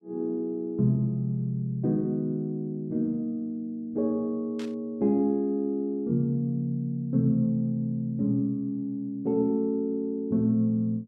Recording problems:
static burst; at 4.5 s; peak -13 dB vs average level

